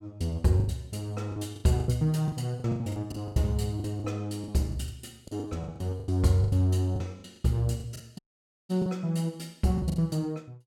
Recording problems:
lost packets; 15% of the sound replaced, filled with the last packet
dropout; at 8 s for 0.5 s

